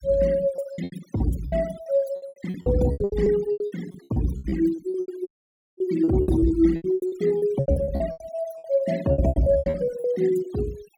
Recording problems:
denoising artefacts; signal-to-artefact ratio 17 dB
lost packets; 22% of the sound replaced, filled with repeated pitch periods
audio cutting out; at 5.5 s for 0.5 s

